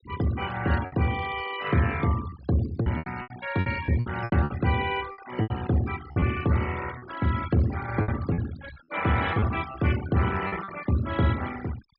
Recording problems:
treble cut off; nothing above 5.5 kHz
noise reduction artefacts; signal-to-artefact ratio 13 dB
lost packets; 9% of the sound replaced, filled with repeated pitch periods

